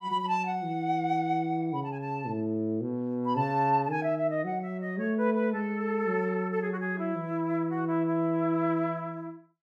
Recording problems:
none

